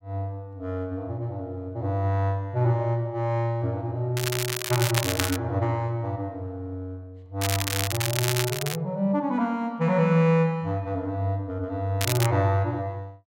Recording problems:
crackling; from 4 to 5.5 s, from 7.5 to 9 s and at 12 s; loose cable, SNR 3 dB

